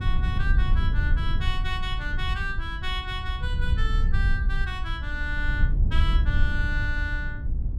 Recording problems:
rumble; below 70 Hz, SNR -5 dB

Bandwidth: 14 kHz